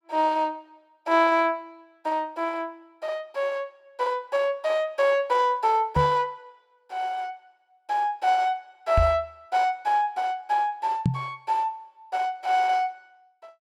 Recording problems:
knock on the microphone; at 6 s, at 9 s and at 11 s; peak +5 dB vs average level

